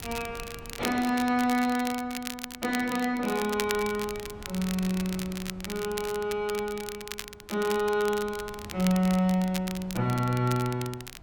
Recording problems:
wind noise; below 330 Hz, SNR 20 dB
crackling; vinyl, SNR 11 dB

